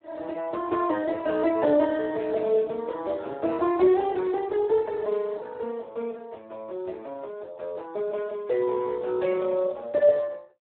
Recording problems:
phone line; 260 Hz to 3.5 kHz, Speex

